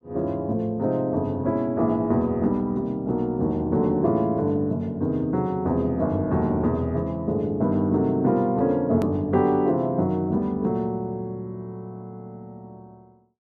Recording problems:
hard cut with a click; at 9 s

